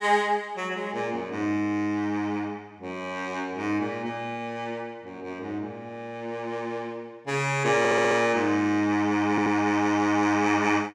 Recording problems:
stutter; at 8 s and at 9.5 s

